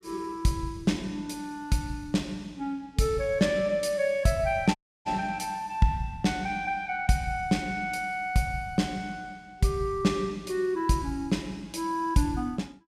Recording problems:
dropout; at 5 s

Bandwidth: 14.5 kHz